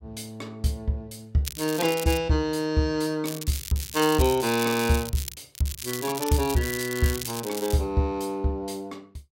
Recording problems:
crackling; at 1.5 s, from 3.5 to 5.5 s and from 5.5 to 7.5 s; loose cable, SNR 9 dB

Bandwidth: 16 kHz